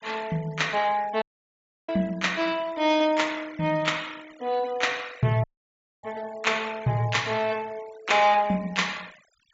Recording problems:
treble missing; nothing above 8 kHz
denoising artefacts; signal-to-artefact ratio 22 dB
dropout; at 1 s for 0.5 s and at 5.5 s for 0.5 s

